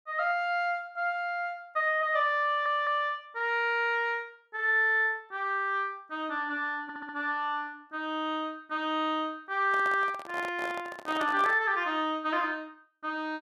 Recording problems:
stutter; at 2.5 s and at 7 s
microphone handling noise; from 9.5 to 12 s; peak -4 dB vs average level

